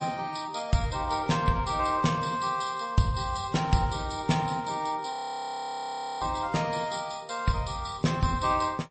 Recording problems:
codec artefacts; MP3, log-spectral distance 4 dB, nothing above 8.2 kHz
frozen audio; at 5 s for 1 s

